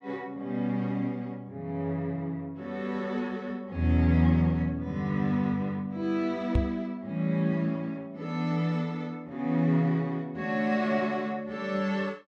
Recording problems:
microphone bump; at 6.5 s; peak +6 dB vs average level

